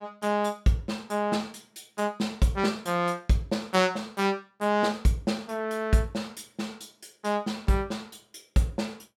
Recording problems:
none

